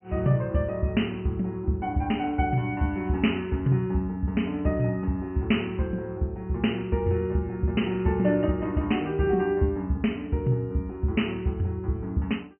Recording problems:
treble missing; nothing above 3.1 kHz

